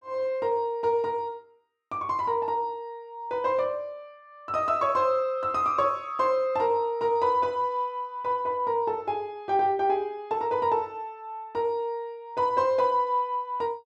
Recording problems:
none

